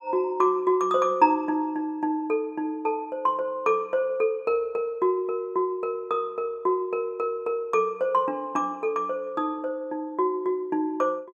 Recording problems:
none

